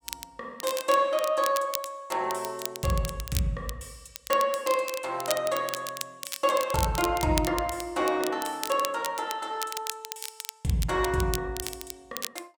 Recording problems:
crackling; vinyl, SNR 9 dB

